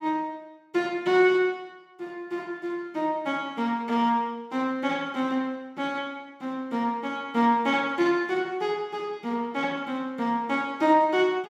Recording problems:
none

